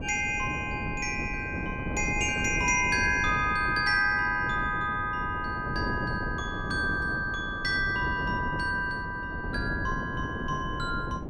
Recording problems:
wind on the microphone; below 340 Hz, SNR 8 dB

